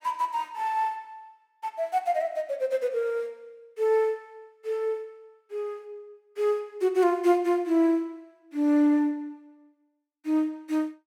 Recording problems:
none

